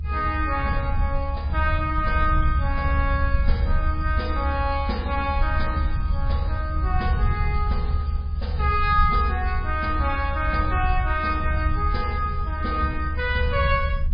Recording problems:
lossy compression; MP3, log-spectral distance 2 dB, nothing above 5 kHz
low-frequency rumble; below 74 Hz, SNR 0 dB

